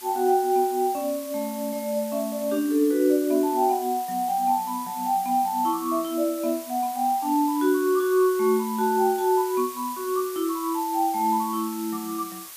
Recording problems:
hiss; slope +2 dB per octave, SNR 14 dB

